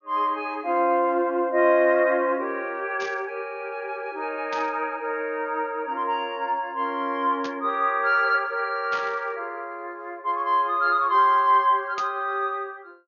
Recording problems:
treble missing; nothing above 6.7 kHz
burst of static; 5 times, first at 3 s; peak -8 dB vs average level

